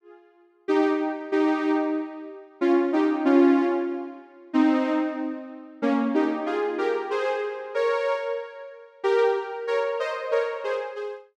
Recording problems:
none

